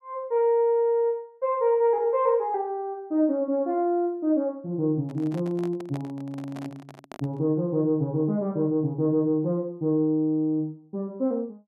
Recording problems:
microphone handling noise; from 5 to 7.5 s; peak -11 dB vs average level

